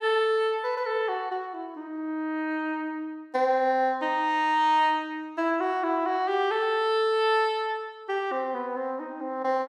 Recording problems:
none

